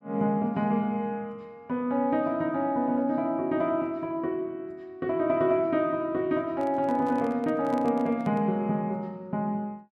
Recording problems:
handling noise; from 6.5 to 8.5 s; peak -10 dB vs average level

